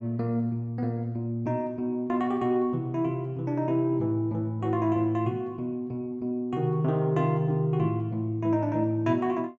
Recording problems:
none

